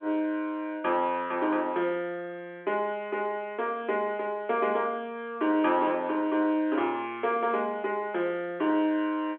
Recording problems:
phone line; 260 Hz to 3.4 kHz, G.711

